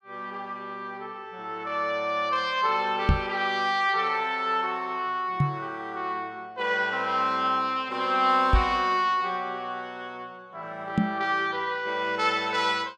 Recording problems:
microphone thump; 4 times, first at 3 s; peak +8 dB vs average level

